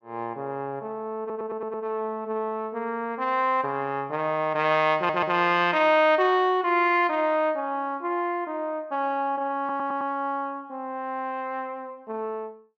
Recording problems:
stutter; at 1 s, at 5 s and at 9.5 s

